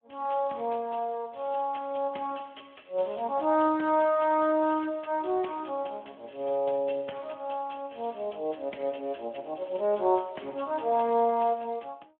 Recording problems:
phone line; 260 Hz to 3.3 kHz, Speex

